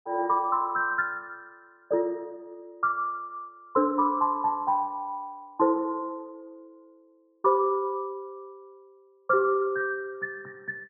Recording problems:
none

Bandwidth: 2 kHz